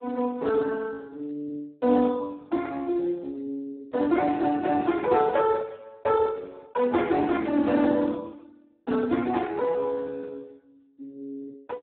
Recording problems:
phone line; 170 Hz to 2.1 kHz, Speex

